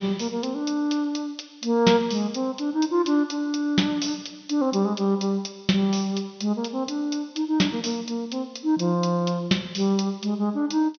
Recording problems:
treble missing; nothing above 6.3 kHz

